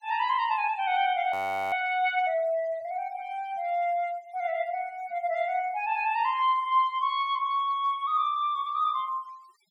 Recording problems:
denoising artefacts; signal-to-artefact ratio 27 dB
frozen audio; at 1.5 s

